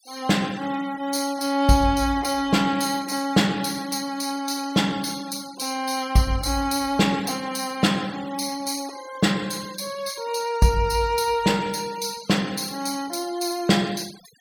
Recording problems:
noise reduction artefacts; signal-to-artefact ratio 19 dB

